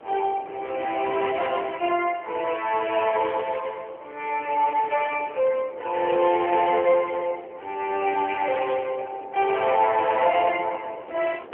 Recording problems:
telephone audio; 320 Hz to 3.2 kHz, AMR-NB
wind on the microphone; below 710 Hz, SNR 20 dB

